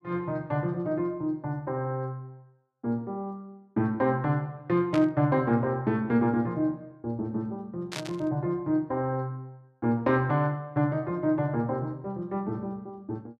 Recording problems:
burst of static; at 5 s and at 8 s; peak -3 dB vs average level

